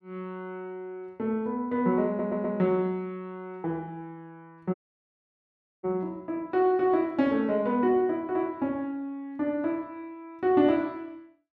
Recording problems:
audio stuttering; at 2 s
audio cutting out; at 4.5 s for 1 s

